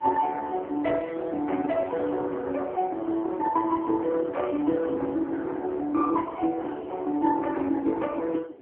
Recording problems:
telephone audio; 240 Hz to 3 kHz, AMR-NB
wind on the microphone; below 540 Hz, SNR 20 dB

